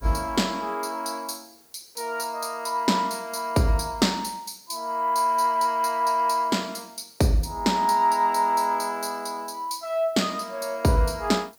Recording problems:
hiss; SNR 30 dB

